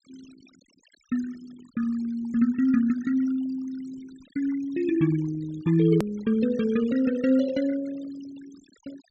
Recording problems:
treble missing; nothing above 8 kHz
noise reduction artefacts; signal-to-artefact ratio 19 dB
click at an edit; at 6 s

